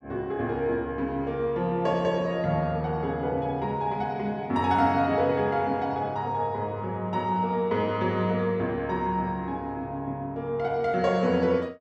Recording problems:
none

